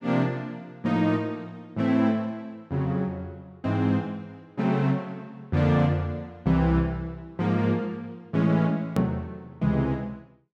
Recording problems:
hard cut with a click; at 9 s

